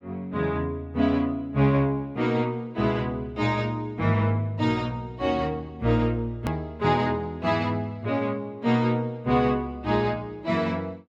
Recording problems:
edit click; at 6.5 s

